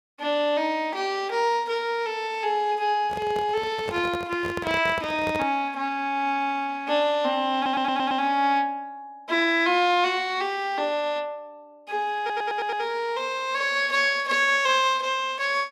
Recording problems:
handling noise; from 3 to 5.5 s; peak -4 dB vs average level
stutter; at 7.5 s and at 12 s

